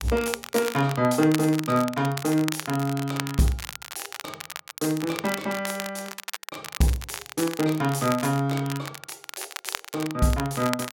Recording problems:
crackle; vinyl, SNR 10 dB

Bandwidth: 16.5 kHz